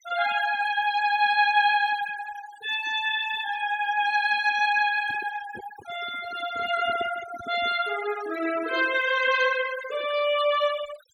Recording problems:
denoising artefacts; signal-to-artefact ratio 14 dB
handling noise; from 5 to 8 s; peak -11 dB vs average level

